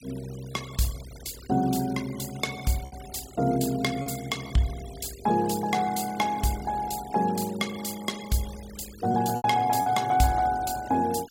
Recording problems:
noise reduction artefacts; signal-to-artefact ratio 17 dB
lost packets; 2% of the sound replaced, filled with repeated pitch periods

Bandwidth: 16.5 kHz